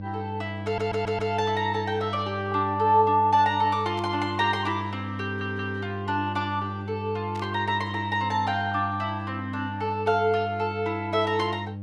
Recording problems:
hum; 50 Hz, harmonics up to 600 Hz, SNR 9 dB
audio stuttering; at 0.5 s and at 5 s
static burst; at 4 s and at 7.5 s; peak -14 dB vs average level

